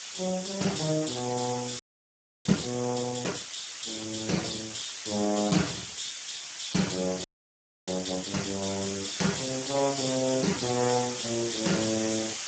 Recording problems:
lossy compression; Speex, log-spectral distance 21 dB, nothing above 7.6 kHz
background hiss; slope +3 dB per octave, SNR 6 dB
audio freezing; at 2 s for 0.5 s and at 7 s for 0.5 s

